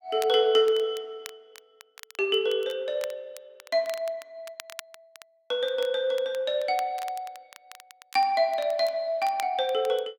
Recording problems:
crackle; vinyl, SNR 20 dB

